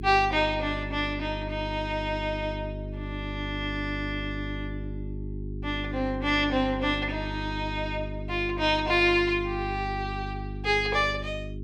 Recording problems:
electrical hum; 50 Hz, harmonics up to 400 Hz, SNR 8 dB

